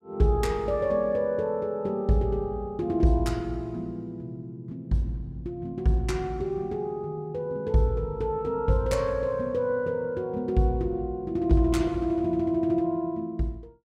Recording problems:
none

